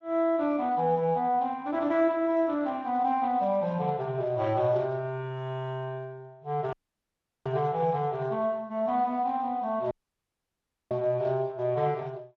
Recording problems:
codec artefacts; Speex, log-spectral distance 2 dB
dropout; at 6.5 s for 0.5 s and at 10 s for 1 s

